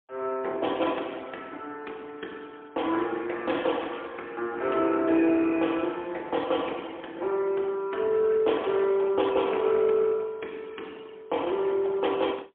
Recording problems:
telephone audio; 280 Hz to 3.4 kHz, AMR-NB, then MP3

